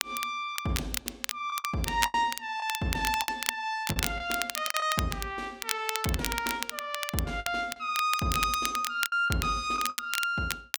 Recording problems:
crackling; vinyl, SNR 4 dB
lost packets; 7% of the sound replaced, filled with the last packet

